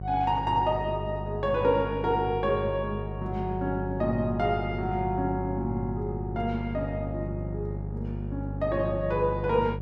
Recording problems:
hum; 50 Hz, harmonics up to 750 Hz, SNR 6 dB

